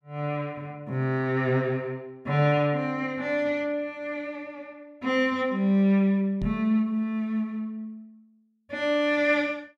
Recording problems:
microphone bump; at 6.5 s; peak -2 dB vs average level

